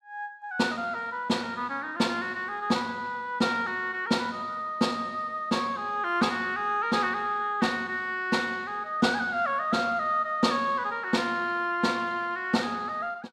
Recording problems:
none

